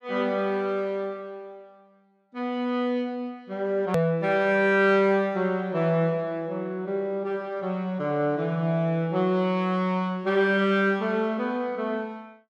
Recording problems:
hard cut with a click; at 4 s

